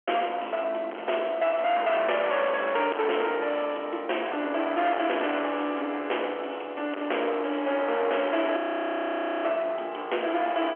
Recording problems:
telephone audio; 300 Hz to 3.3 kHz, G.711
distorted audio; soft clipping, signal-to-distortion ratio 8 dB
audio freezing; at 8.5 s for 1 s

